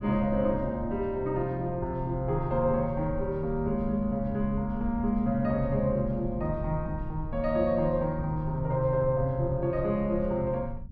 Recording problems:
rumble; below 100 Hz, SNR 11 dB

